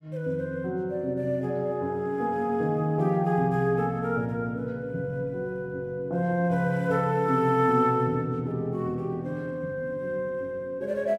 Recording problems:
none

